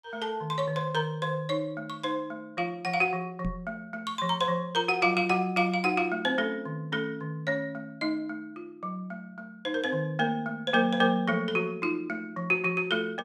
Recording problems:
microphone thump; at 3.5 s; peak -2 dB vs average level

